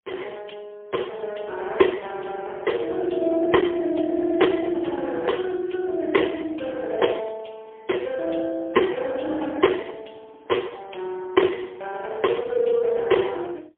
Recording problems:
phone line; 240 Hz to 3.4 kHz, AMR-NB, then MP3

